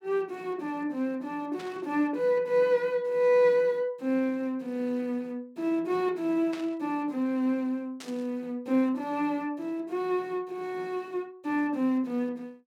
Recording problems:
static burst; at 1.5 s, at 6.5 s and at 8 s; peak -9 dB vs average level

